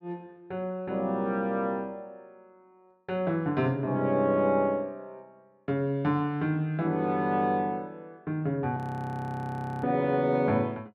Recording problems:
frozen audio; at 9 s for 1 s

